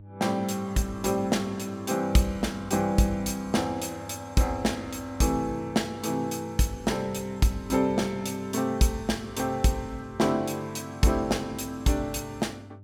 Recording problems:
electrical hum; 50 Hz, harmonics up to 600 Hz, SNR 19 dB

